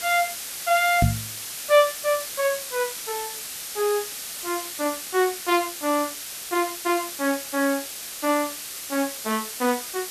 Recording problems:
hiss; slope +2 dB per octave, SNR 7 dB
microphone bump; at 1 s; peak +8 dB vs average level

